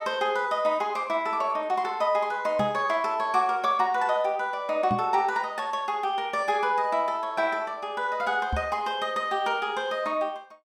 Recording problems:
knock on the microphone; at 2.5 s, at 5 s and at 8.5 s; peak 0 dB vs average level

